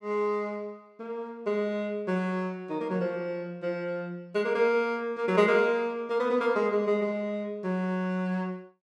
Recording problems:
none

